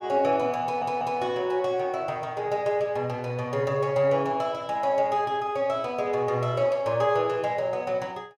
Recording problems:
stutter; at 0.5 s

